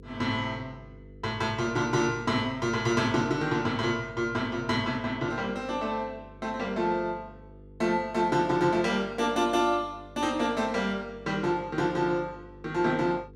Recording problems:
electrical hum; 50 Hz, harmonics up to 500 Hz, SNR 21 dB

